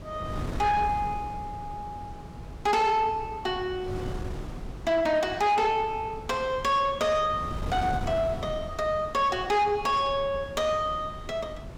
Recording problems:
distorted audio; soft clipping, signal-to-distortion ratio 11 dB
wind on the microphone; below 340 Hz, SNR 12 dB

